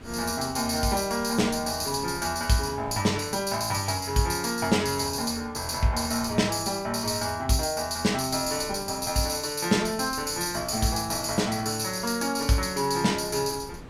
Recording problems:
wind noise; below 520 Hz, SNR 21 dB

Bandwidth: 16.5 kHz